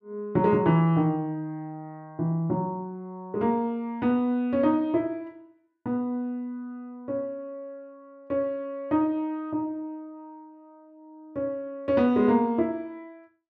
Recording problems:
none

